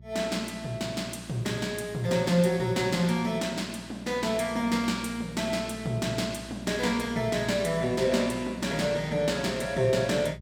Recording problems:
hum; 60 Hz, harmonics up to 420 Hz, SNR 19 dB

